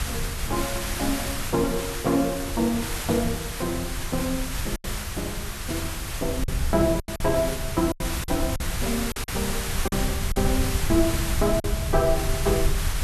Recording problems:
background hiss; slope -1 dB per octave, SNR 4 dB
rumble; below 88 Hz, SNR 5 dB
lost packets; 5% of the sound replaced, filled with silence

